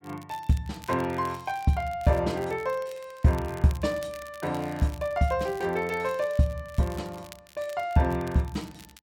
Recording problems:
crackle; vinyl, SNR 22 dB

